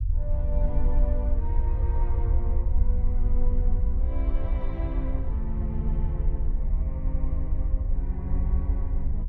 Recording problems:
rumble; below 60 Hz, SNR -9 dB

